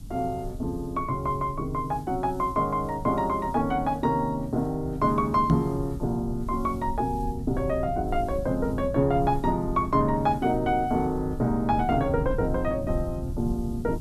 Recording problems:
background hiss; SNR 29 dB
low-frequency rumble; below 120 Hz, SNR 10 dB
microphone thump; at 5.5 s; peak +9 dB vs average level

